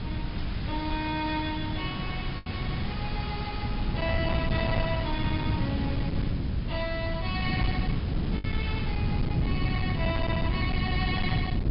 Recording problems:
treble cut off; nothing above 5.5 kHz
distortion; hard clipping, signal-to-distortion ratio 12 dB
background hiss; SNR 9 dB
wind noise; below 190 Hz, SNR -3 dB
lost packets; 1.3% of the sound replaced, filled with the last packet

